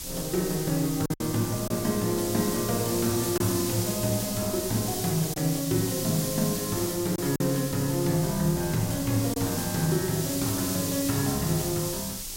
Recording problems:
background hiss; SNR 5 dB
wind noise; below 160 Hz, SNR 21 dB
lost packets; 2% of the sound replaced, filled with silence

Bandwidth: 16 kHz